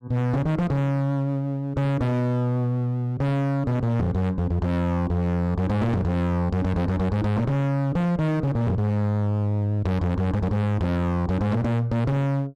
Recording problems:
distorted audio; hard clipping, uneven, signal-to-distortion ratio 5 dB

